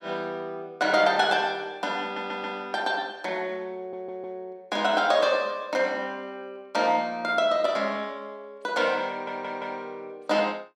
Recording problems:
audio stuttering; at 2 s, at 4 s and at 9 s

